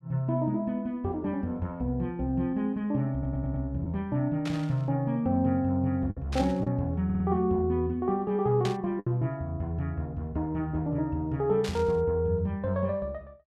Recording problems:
lost packets; 1.3% of the sound replaced, filled with the last packet
stutter; at 3 s and at 7 s
burst of static; 4 times, first at 4.5 s; peak -4 dB vs average level

